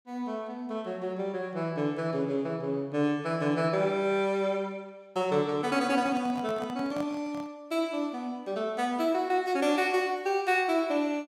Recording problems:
handling noise; from 6 to 7.5 s; peak -8 dB vs average level

